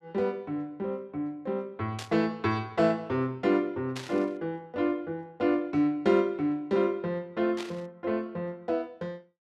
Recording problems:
static burst; at 2 s, at 4 s and at 7.5 s; peak -5 dB vs average level

